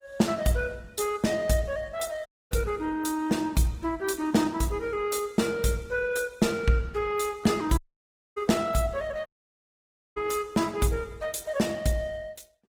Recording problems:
codec artefacts; Opus, log-spectral distance 4 dB, nothing above 19 kHz
audio cutting out; at 2.5 s, at 8 s for 0.5 s and at 9.5 s for 1 s

